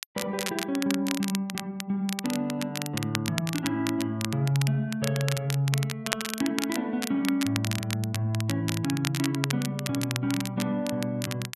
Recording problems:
crackling; vinyl, SNR 6 dB

